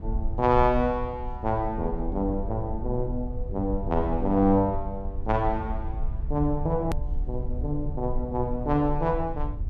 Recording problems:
low-frequency rumble; below 60 Hz, SNR 7 dB
click at an edit; at 7 s

